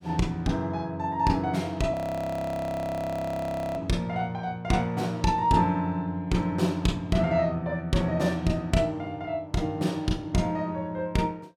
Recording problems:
frozen audio; at 2 s for 2 s

